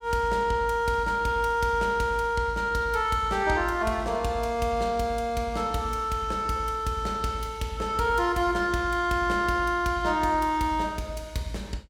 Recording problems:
none

